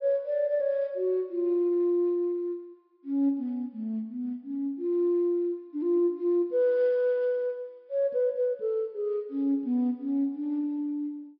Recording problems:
treble cut off; nothing above 5.5 kHz

